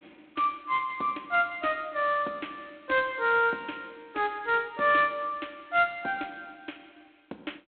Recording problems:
phone line; 240 Hz to 4 kHz, G.726

